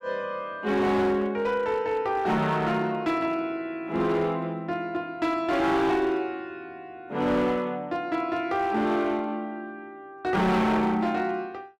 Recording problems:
distorted audio; hard clipping, uneven, signal-to-distortion ratio 11 dB

